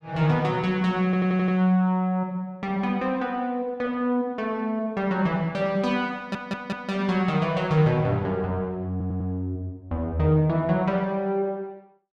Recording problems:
audio stuttering; at 1 s, at 6 s and at 9 s

